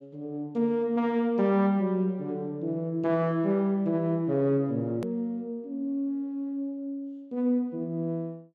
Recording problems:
click at an edit; at 5 s

